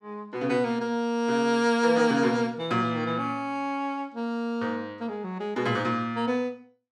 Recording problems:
none

